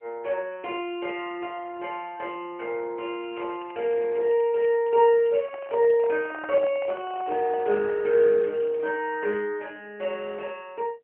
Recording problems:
telephone audio; 300 Hz to 3.1 kHz, AMR-NB
crackling; from 3 to 6 s and from 6.5 to 9.5 s; loose cable, SNR 27 dB
microphone handling noise; from 5.5 to 8 s; peak -8 dB vs average level

